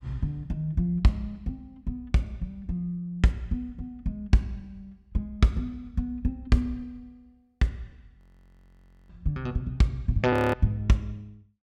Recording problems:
frozen audio; at 8 s for 1 s and at 10 s

